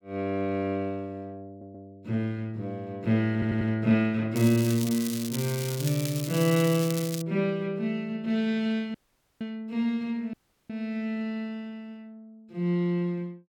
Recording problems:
audio stuttering; at 1.5 s and at 3.5 s
crackle; from 4.5 to 7 s; loose cable, SNR 9 dB
dropout; at 9 s and at 10 s

